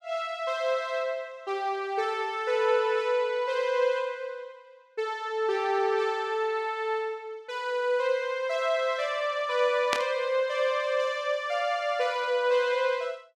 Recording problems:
burst of static; at 10 s; peak +4 dB vs average level

